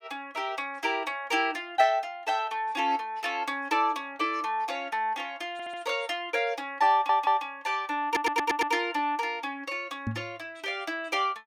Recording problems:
stutter; at 5.5 s, at 7 s and at 8 s
microphone thump; at 10 s; peak 0 dB vs average level

